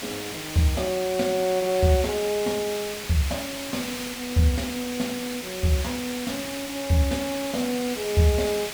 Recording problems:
background hiss; slope 0 dB per octave, SNR 7 dB

